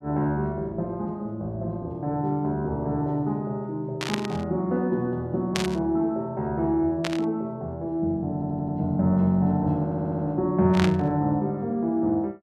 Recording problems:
burst of static; 4 times, first at 4 s; peak +3 dB vs average level
audio stuttering; at 8.5 s and at 10 s

